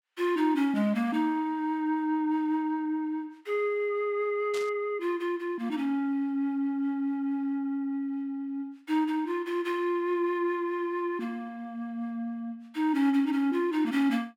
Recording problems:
static burst; at 4.5 s; peak -7 dB vs average level

